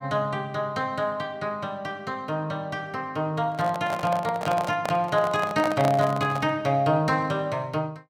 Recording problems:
handling noise; from 3.5 to 6.5 s; peak +1 dB vs average level

